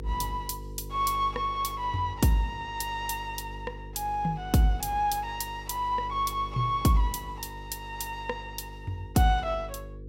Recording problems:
electrical hum; 50 Hz, harmonics up to 500 Hz, SNR 13 dB

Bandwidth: 16.5 kHz